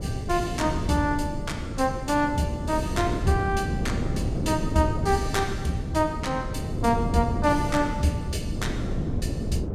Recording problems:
wind noise; below 240 Hz, SNR 3 dB

